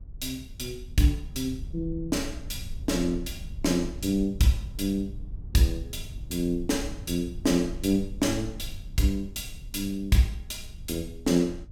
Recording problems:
rumble; below 78 Hz, SNR 13 dB

